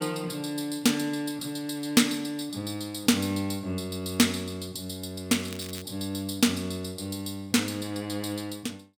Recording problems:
crackle; at 5.5 s; loose cable, SNR 15 dB

